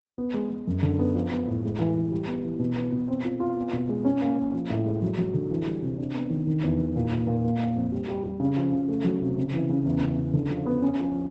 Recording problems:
lossy compression; Opus, log-spectral distance 2 dB, nothing above 8 kHz

